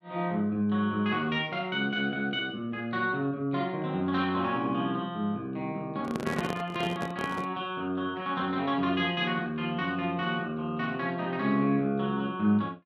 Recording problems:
microphone handling noise; from 6 to 7.5 s; peak +2 dB vs average level

